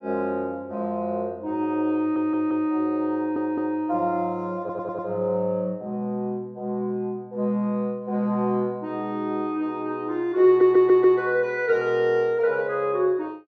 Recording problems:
audio stuttering; 4 times, first at 2 s

